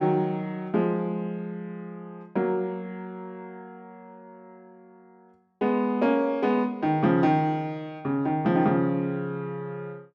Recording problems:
none

